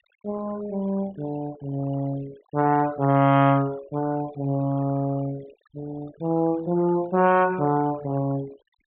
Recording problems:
treble cut off; nothing above 4 kHz
denoising artefacts; signal-to-artefact ratio 22 dB

